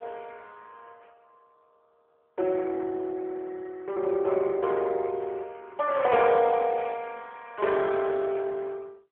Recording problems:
phone line; 300 Hz to 3.4 kHz, AMR-NB

